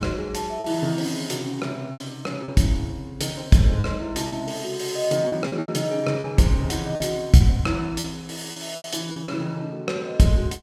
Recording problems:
packet loss; 7% of the sound replaced, filled with repeated pitch periods

